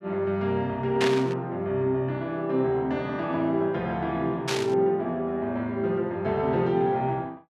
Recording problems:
static burst; at 1 s and at 4.5 s; peak +2 dB vs average level

